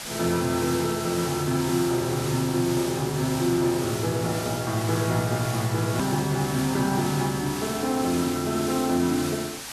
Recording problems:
hiss; SNR 8 dB
click at an edit; at 6 s

